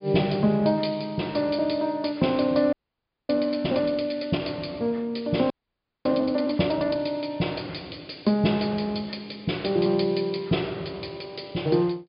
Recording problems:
low-pass filter; nothing above 5 kHz
frozen audio; at 2.5 s for 0.5 s and at 5.5 s for 0.5 s

